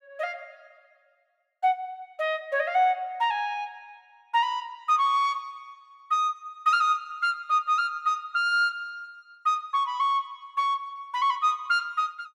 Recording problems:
none

